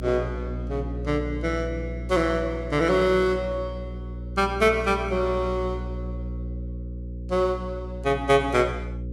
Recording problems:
hum; 60 Hz, harmonics up to 540 Hz, SNR 9 dB

